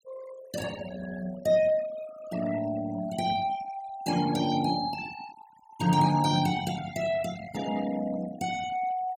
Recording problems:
denoising artefacts; signal-to-artefact ratio 15 dB

